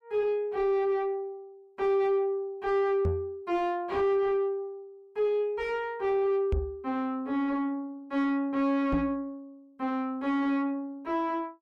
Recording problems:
distortion; soft clipping, signal-to-distortion ratio 10 dB
microphone bump; at 3 s, at 6.5 s and at 9 s; peak +4 dB vs average level

